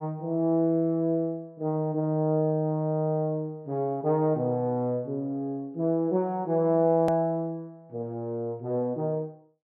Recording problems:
click at an edit; at 7 s

